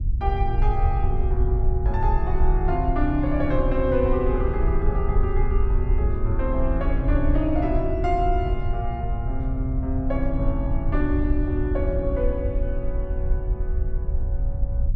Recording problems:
low-frequency rumble; below 66 Hz, SNR -1 dB

